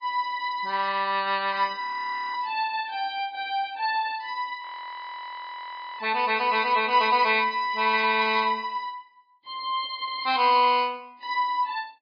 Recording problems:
codec artefacts; MP3, log-spectral distance 3 dB
audio freezing; at 2 s for 0.5 s and at 4.5 s for 1.5 s

